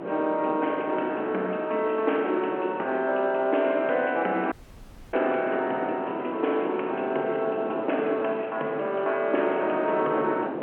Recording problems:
telephone audio; 280 Hz to 3.1 kHz, G.711
wind noise; below 640 Hz, SNR 9 dB
audio cutting out; at 4.5 s for 0.5 s

